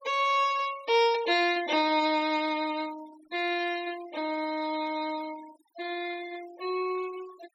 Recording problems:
noise reduction artefacts; signal-to-artefact ratio 18 dB

